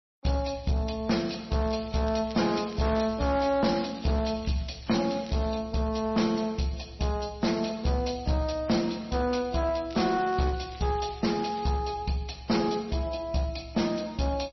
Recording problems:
lossy compression; MP3, log-spectral distance 7 dB, nothing above 5.8 kHz
distortion; hard clipping, uneven, signal-to-distortion ratio 11 dB
crackling; from 1.5 to 5.5 s and from 10 to 12 s; loose cable, SNR 21 dB

